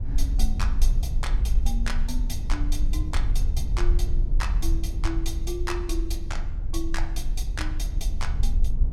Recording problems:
rumble; below 50 Hz, strongest tone 20 Hz, SNR -7 dB

